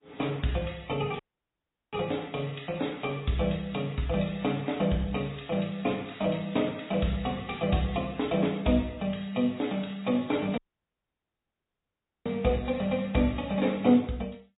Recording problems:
low-pass filter; nothing above 3.8 kHz
lossy codec; MP3, then MP3, log-spectral distance 5 dB
audio cutting out; at 1 s for 0.5 s and at 11 s for 1.5 s
crackle; from 4.5 to 7.5 s; loose cable, SNR 27 dB

